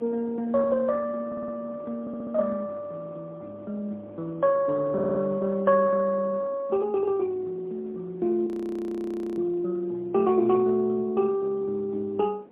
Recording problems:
phone line; 260 Hz to 2.4 kHz, AMR-NB, then MP3
wind on the microphone; below 530 Hz, SNR 21 dB
audio stuttering; at 1.5 s, at 2 s and at 5 s
audio freezing; at 8.5 s for 1 s

